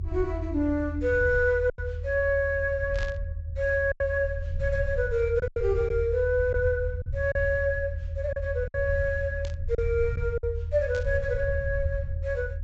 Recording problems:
low-pass filter; nothing above 8 kHz
low-frequency rumble; below 82 Hz, SNR 6 dB
lost packets; 4% of the sound replaced, filled with silence
static burst; at 3 s, at 9.5 s and at 11 s; peak -9 dB vs average level

